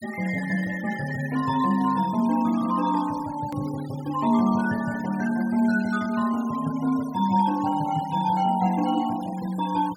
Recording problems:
denoising artefacts; signal-to-artefact ratio 18 dB
hard cut with a click; at 3.5 s

